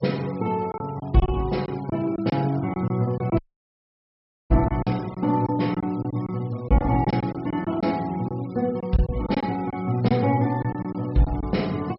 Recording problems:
low-pass filter; nothing above 5.4 kHz
denoising artefacts; signal-to-artefact ratio 23 dB
packet loss; 9% of the sound replaced, filled with silence
audio cutting out; at 3.5 s for 1 s

